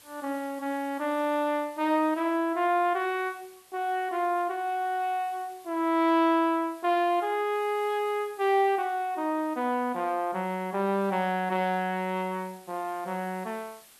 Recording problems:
hiss; slope 0 dB per octave, SNR 26 dB

